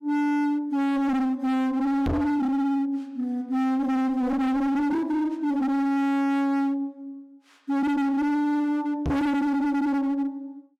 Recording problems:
distortion; hard clipping, signal-to-distortion ratio 6 dB
knock on the microphone; at 2 s and at 9 s; peak +3 dB vs average level

